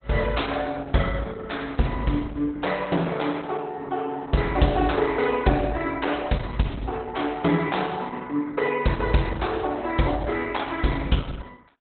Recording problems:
lossy codec; Opus, log-spectral distance 5 dB, nothing above 4 kHz

